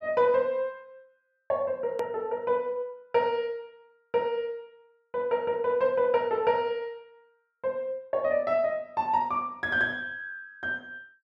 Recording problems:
edit click; at 2 s

